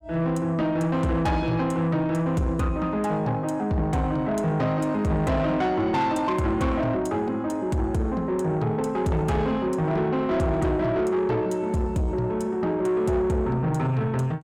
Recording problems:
distortion; soft clipping, signal-to-distortion ratio 10 dB

